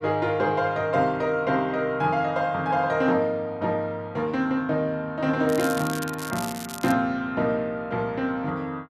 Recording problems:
crackling; from 5.5 to 7 s; loose cable, SNR 12 dB

